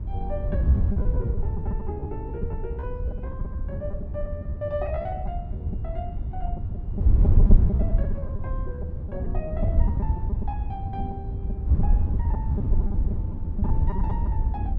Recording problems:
wind noise; below 88 Hz, SNR -11 dB
packet loss; 14% of the sound replaced, filled with repeated pitch periods

